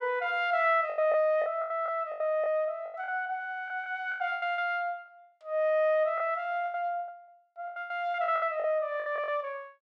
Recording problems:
packet loss; 15% of the sound replaced, filled with the last packet

